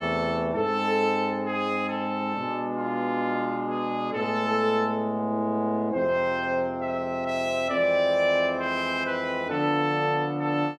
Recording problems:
none

